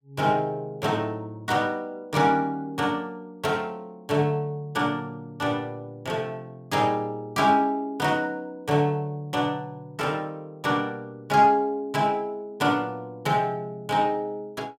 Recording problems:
none

